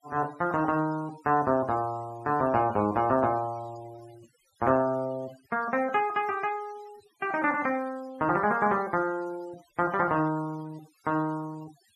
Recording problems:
denoising artefacts; signal-to-artefact ratio 22 dB

